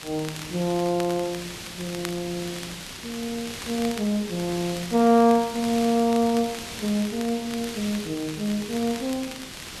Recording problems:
background hiss; slope -1 dB per octave, SNR 11 dB
crackle; vinyl, SNR 17 dB

